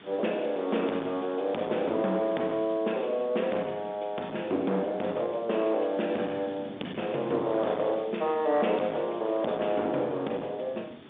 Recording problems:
phone line; 220 Hz to 3.7 kHz, G.711
distorted audio; hard clipping, uneven, signal-to-distortion ratio 10 dB
background hiss; SNR 24 dB
wind on the microphone; below 620 Hz, SNR 22 dB

